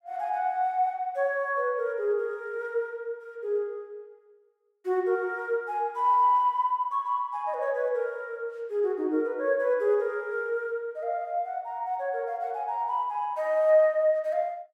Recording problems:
none

